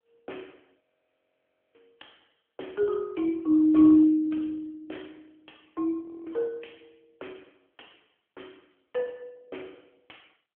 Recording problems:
phone line; 190 Hz to 3.3 kHz, AMR-NB
audio freezing; at 1 s for 1 s and at 6 s

